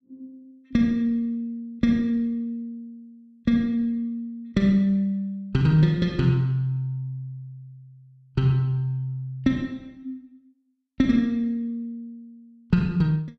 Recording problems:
none

